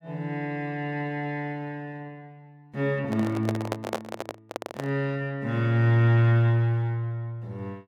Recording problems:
microphone handling noise; from 3 to 5 s; peak +1 dB vs average level

